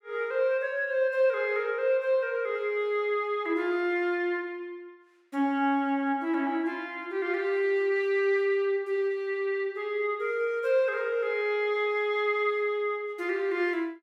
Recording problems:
none

